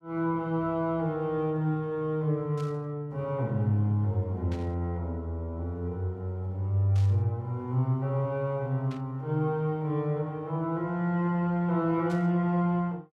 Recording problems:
burst of static; 5 times, first at 2.5 s; peak -15 dB vs average level

